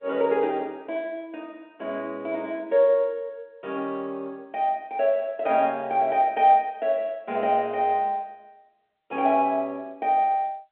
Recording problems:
telephone audio; 300 Hz to 3.7 kHz, G.711

